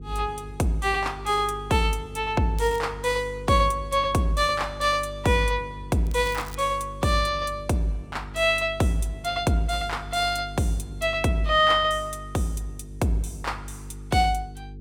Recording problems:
hum; 50 Hz, harmonics up to 450 Hz, SNR 15 dB
crackling; at 2.5 s and at 6 s; loose cable, SNR 21 dB

